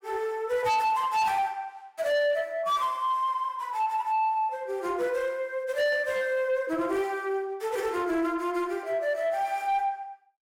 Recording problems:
distorted audio; soft clipping, signal-to-distortion ratio 11 dB

